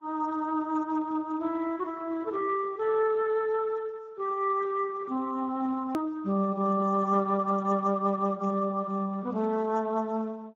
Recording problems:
lossy compression; Vorbis, then Speex, log-spectral distance 2 dB, nothing above 16.1 kHz
edit click; at 6 s

